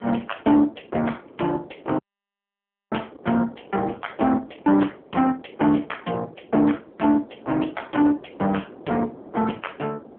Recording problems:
telephone audio; 220 Hz to 3.3 kHz, AMR-NB
distortion; soft clipping, signal-to-distortion ratio 14 dB
wind on the microphone; below 600 Hz, SNR 21 dB
dropout; at 2 s for 1 s

